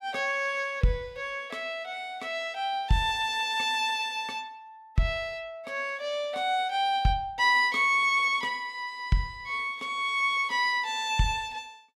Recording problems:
none

